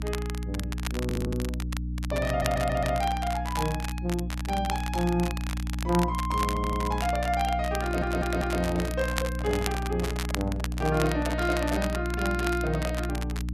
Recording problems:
hum; 60 Hz, harmonics up to 300 Hz, SNR 3 dB
crackling; vinyl, SNR 9 dB
audio stuttering; 4 times, first at 1 s
microphone handling noise; from 7.5 to 12 s; peak -3 dB vs average level

